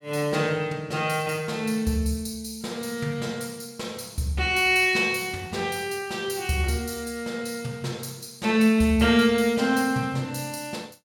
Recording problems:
none

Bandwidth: 17.5 kHz